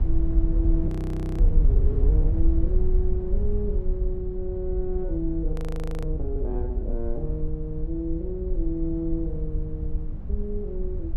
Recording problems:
rumble; below 58 Hz, SNR -4 dB
frozen audio; at 1 s for 0.5 s and at 5.5 s for 0.5 s

